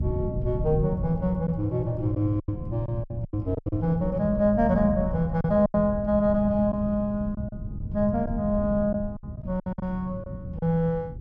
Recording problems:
wind noise; below 160 Hz, SNR 8 dB
packet loss; 8% of the sound replaced, filled with silence

